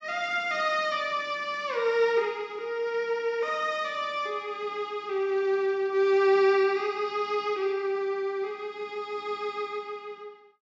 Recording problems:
treble cut off; nothing above 8 kHz

